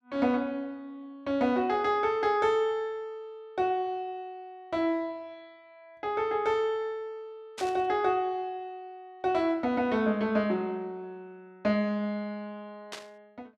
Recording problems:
burst of static; at 7.5 s and at 13 s; peak -6 dB vs average level

